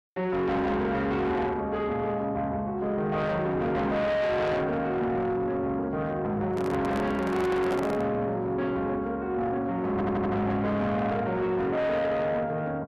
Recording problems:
distortion; soft clipping, signal-to-distortion ratio 8 dB
handling noise; from 6.5 to 8 s; peak 0 dB vs average level
stutter; at 10 s

